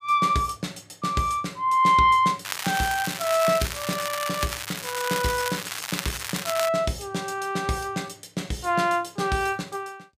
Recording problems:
crackle; from 2.5 to 6.5 s; loose cable, SNR 6 dB

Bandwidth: 15 kHz